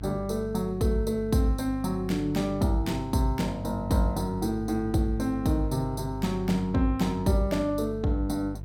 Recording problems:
mains hum; 50 Hz, harmonics up to 500 Hz, SNR 10 dB

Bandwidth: 17 kHz